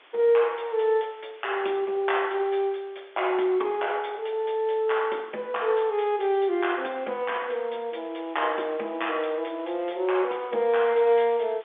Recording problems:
telephone audio; 280 Hz to 3.6 kHz, G.711
background hiss; SNR 27 dB

